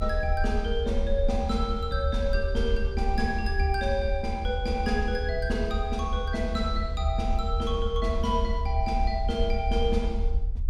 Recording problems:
hum; 60 Hz, harmonics up to 420 Hz, SNR 16 dB
rumble; below 70 Hz, SNR 1 dB

